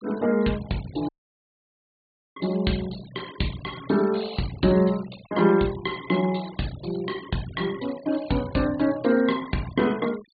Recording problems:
low-pass filter; nothing above 4.6 kHz
denoising artefacts; signal-to-artefact ratio 19 dB
audio cutting out; at 1 s for 1.5 s

